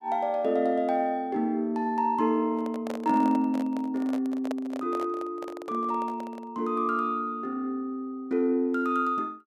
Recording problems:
handling noise; from 2.5 to 6.5 s; peak -3 dB vs average level

